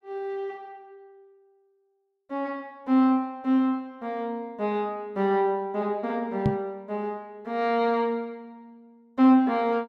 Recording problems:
knock on the microphone; at 6.5 s; peak +6 dB vs average level

